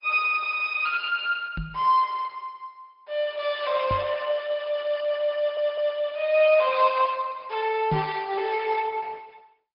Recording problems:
treble cut off; nothing above 5.2 kHz
lossy compression; Opus, log-spectral distance 3 dB
microphone thump; at 1.5 s, at 4 s and at 8 s; peak +1 dB vs average level
audio stuttering; at 5.5 s

